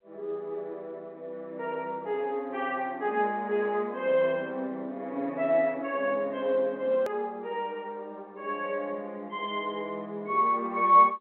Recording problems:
phone line; 240 Hz to 3.3 kHz, G.711
hard cut with a click; at 7 s

